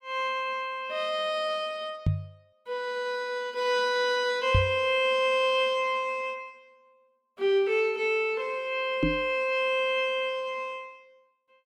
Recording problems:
microphone thump; at 2 s, at 4.5 s and at 9 s; peak +6 dB vs average level

